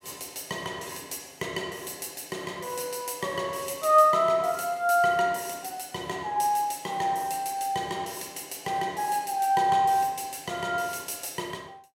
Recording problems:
none

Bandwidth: 16 kHz